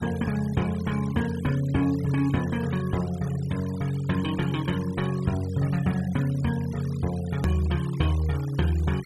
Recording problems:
denoising artefacts; signal-to-artefact ratio 18 dB
hard cut with a click; at 7.5 s

